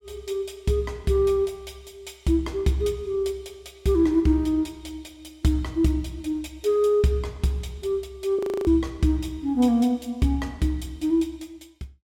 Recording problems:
audio freezing; at 8.5 s

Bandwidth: 16.5 kHz